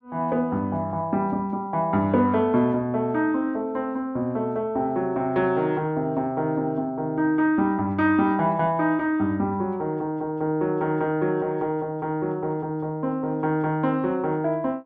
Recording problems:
none

